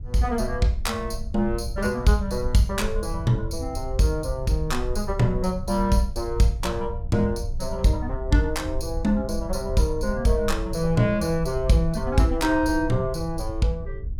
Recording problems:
rumble; below 70 Hz, SNR 9 dB

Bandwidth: 17.5 kHz